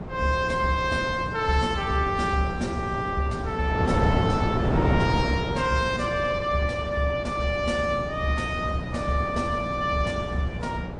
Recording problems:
codec artefacts; MP3, then MP3, log-spectral distance 2 dB, nothing above 8.5 kHz
hum; 60 Hz, harmonics up to 660 Hz, SNR 14 dB
wind noise; below 520 Hz, SNR 5 dB

